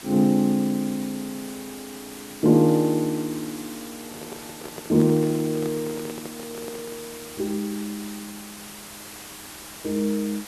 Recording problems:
hiss; slope -1 dB per octave, SNR 15 dB
microphone handling noise; from 4 to 7 s; peak -7 dB vs average level

